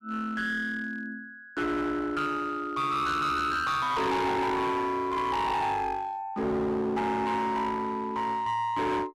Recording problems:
distortion; hard clipping, uneven, signal-to-distortion ratio 7 dB

